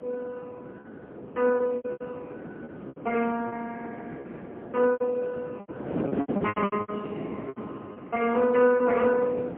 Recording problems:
telephone audio; 170 Hz to 2.8 kHz, AMR-NB, then MP3
wind on the microphone; below 510 Hz, SNR 10 dB
packet loss; 11% of the sound replaced, filled with repeated pitch periods

